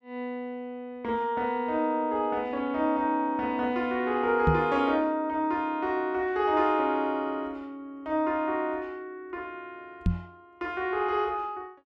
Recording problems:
microphone bump; at 4.5 s and at 10 s; peak +6 dB vs average level

